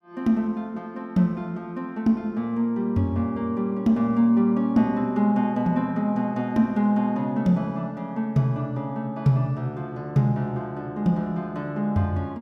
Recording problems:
none

